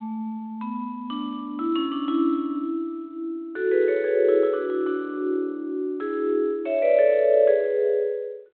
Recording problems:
telephone audio; 240 Hz to 3.9 kHz, G.726

